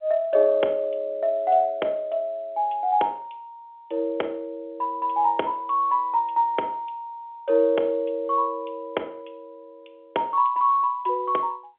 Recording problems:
telephone audio; 340 Hz to 3.4 kHz, G.711

